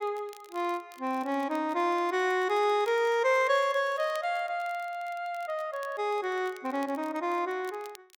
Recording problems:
crackling; vinyl, SNR 26 dB

